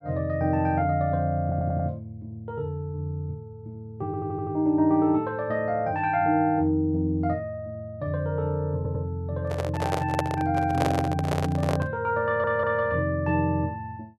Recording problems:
audio stuttering; 4 times, first at 1.5 s
handling noise; from 9.5 to 12 s; peak +4 dB vs average level

